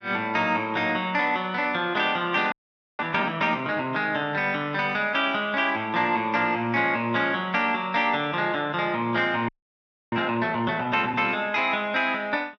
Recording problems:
frozen audio; at 2.5 s and at 9.5 s for 0.5 s

